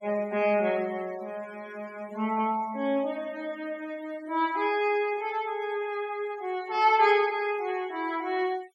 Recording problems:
denoising artefacts; signal-to-artefact ratio 22 dB

